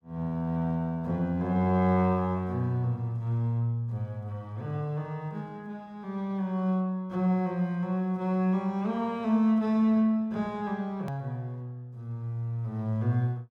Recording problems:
edit click; at 11 s

